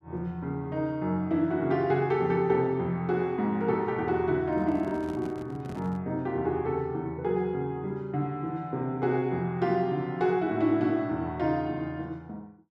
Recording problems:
handling noise; from 4.5 to 6 s; peak -8 dB vs average level

